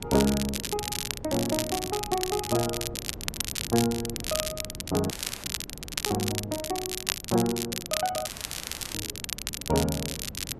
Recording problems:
wind noise; below 300 Hz, SNR 14 dB
crackling; vinyl, SNR 2 dB
audio cutting out; at 5 s and at 8.5 s for 0.5 s

